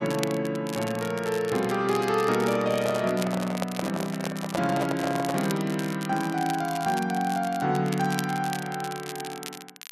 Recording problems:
crackle; vinyl, SNR 13 dB
microphone handling noise; from 2.5 to 5.5 s; peak +2 dB vs average level

